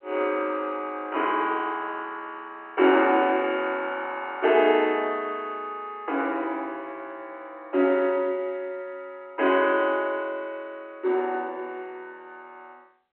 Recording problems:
phone line; 240 Hz to 3.1 kHz, G.711

